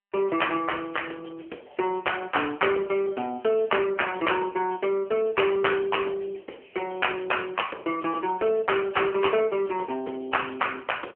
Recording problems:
phone line; 280 Hz to 3.1 kHz, AMR-NB

